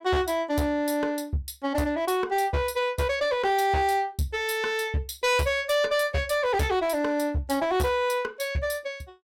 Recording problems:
distorted audio; hard clipping, uneven, signal-to-distortion ratio 10 dB

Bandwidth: 16.5 kHz